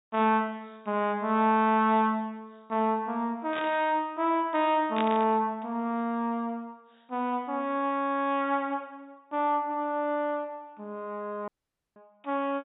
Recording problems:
treble cut off; nothing above 4 kHz
burst of static; at 3.5 s and at 5 s; peak -3 dB vs average level
audio cutting out; at 11 s

